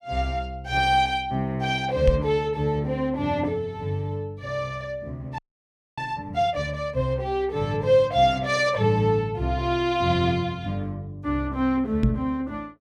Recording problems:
knock on the microphone; at 2 s and at 12 s; peak +6 dB vs average level
frozen audio; at 5.5 s for 0.5 s

